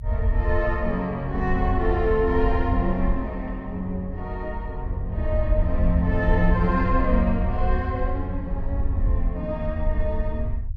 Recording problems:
rumble; below 76 Hz, SNR 1 dB

